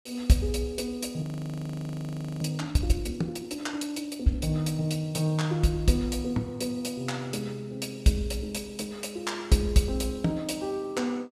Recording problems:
frozen audio; at 1 s for 1 s

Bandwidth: 14.5 kHz